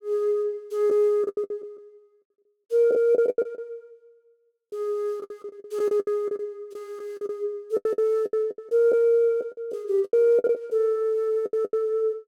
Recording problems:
packet loss; 15% of the sound replaced, filled with the last packet

